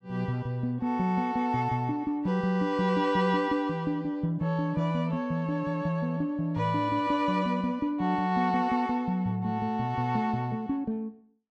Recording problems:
none

